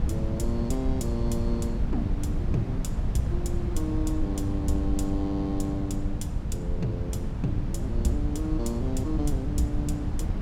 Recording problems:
wind noise; below 130 Hz, SNR -2 dB

